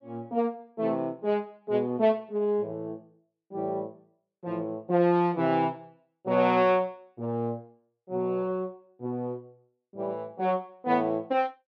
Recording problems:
none

